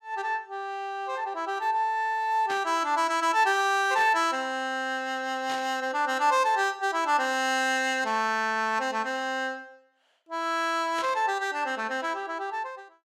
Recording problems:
burst of static; 4 times, first at 2.5 s; peak -8 dB vs average level

